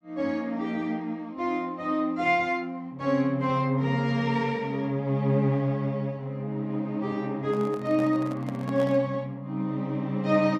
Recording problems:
handling noise; from 7.5 to 9 s; peak -8 dB vs average level

